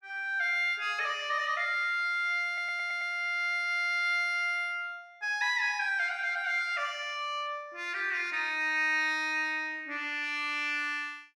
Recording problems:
audio stuttering; at 2.5 s

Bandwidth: 14.5 kHz